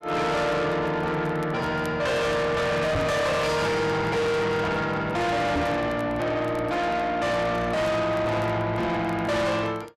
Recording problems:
distortion; soft clipping, signal-to-distortion ratio 6 dB
crackling; vinyl, SNR 30 dB
microphone bump; at 3 s and at 5.5 s; peak +4 dB vs average level

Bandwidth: 13 kHz